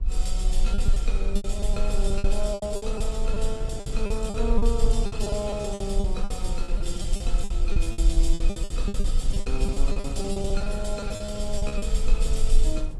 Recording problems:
lossy compression; AAC, log-spectral distance 2 dB, nothing above 11 kHz
rumble; below 38 Hz, strongest tone 18 Hz, SNR -3 dB
wind noise; below 150 Hz, SNR 7 dB
lost packets; 17% of the sound replaced, filled with repeated pitch periods

